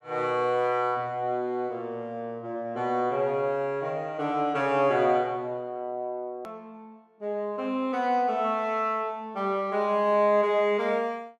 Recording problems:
click at an edit; at 6.5 s

